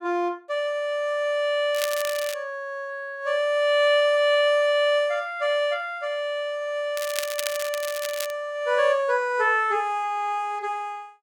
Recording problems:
crackle; at 2 s and from 7 to 8.5 s; loose cable, SNR 9 dB

